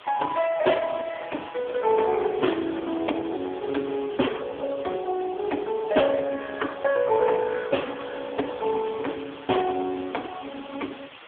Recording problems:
phone line; 240 Hz to 3.4 kHz, AMR-NB
hiss; SNR 19 dB

